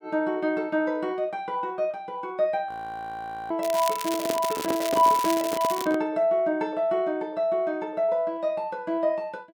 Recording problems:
audio freezing; at 2.5 s for 1 s
crackle; from 3.5 to 6 s; loose cable, SNR 9 dB
microphone handling noise; from 4 to 6 s; peak +1 dB vs average level

